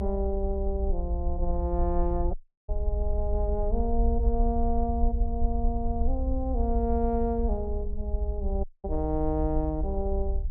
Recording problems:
rumble; below 62 Hz, SNR 0 dB
dropout; at 2.5 s and at 8.5 s

